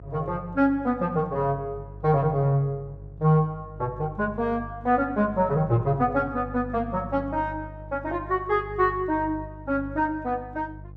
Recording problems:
hum; 50 Hz, harmonics up to 500 Hz, SNR 15 dB

